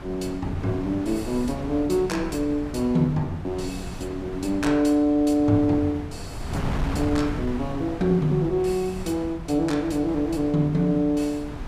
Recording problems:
wind on the microphone; below 330 Hz, SNR 11 dB

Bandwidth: 14.5 kHz